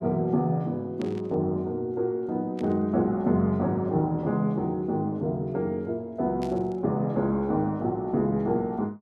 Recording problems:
burst of static; at 1 s, at 2.5 s and at 6.5 s; peak -13 dB vs average level

